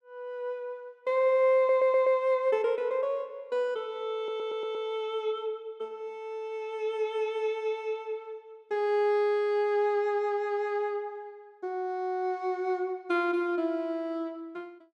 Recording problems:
stutter; at 1.5 s and at 4 s

